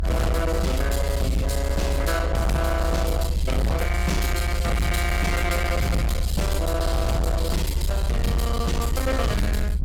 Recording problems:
distorted audio; hard clipping, signal-to-distortion ratio 8 dB
rumble; below 70 Hz, SNR 1 dB

